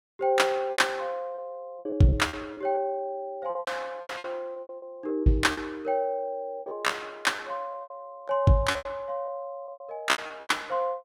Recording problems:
packet loss; 14% of the sound replaced, filled with repeated pitch periods

